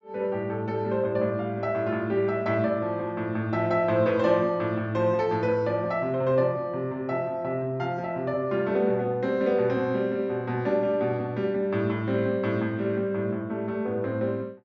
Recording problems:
treble missing; nothing above 8 kHz

